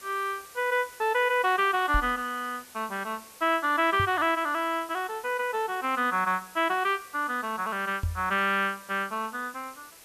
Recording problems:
background hiss; slope -1 dB per octave, SNR 20 dB
microphone bump; at 2 s, at 4 s and at 8 s; peak +1 dB vs average level

